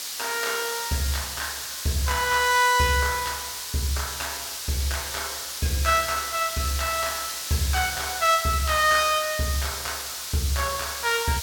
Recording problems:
hiss; slope +4 dB per octave, SNR 5 dB

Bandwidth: 17 kHz